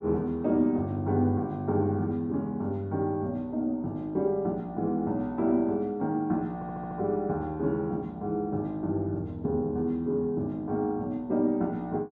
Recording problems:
stutter; at 6.5 s

